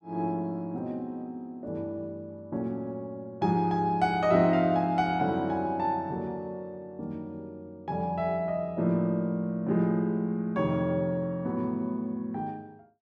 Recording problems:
none

